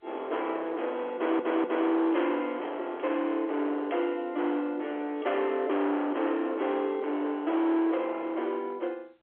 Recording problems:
telephone audio; 300 Hz to 3.3 kHz, G.711
distortion; hard clipping, signal-to-distortion ratio 8 dB
audio stuttering; at 1 s

